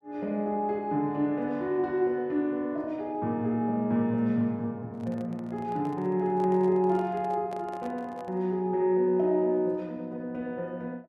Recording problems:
microphone handling noise; from 5 to 8.5 s; peak -11 dB vs average level

